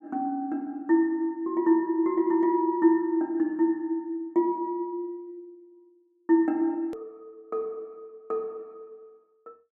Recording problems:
click at an edit; at 7 s

